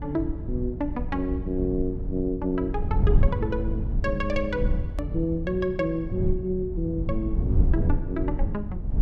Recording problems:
electrical hum; 60 Hz, harmonics up to 660 Hz, SNR 19 dB
low-frequency rumble; below 96 Hz, SNR 0 dB
edit click; at 5 s

